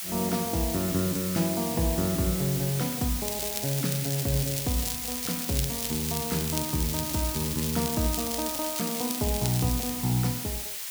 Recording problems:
background hiss; slope +4 dB per octave, SNR 2 dB
crackle; from 3 to 10 s; loose cable, SNR 5 dB

